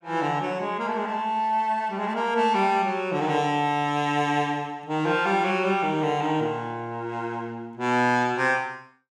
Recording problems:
none

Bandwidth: 15.5 kHz